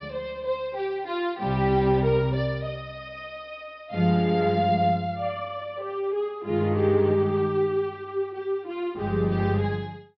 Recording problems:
low-pass filter; nothing above 5.6 kHz

